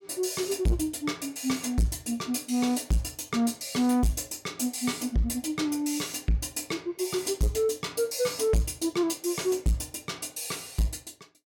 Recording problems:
distorted audio; soft clipping, signal-to-distortion ratio 7 dB

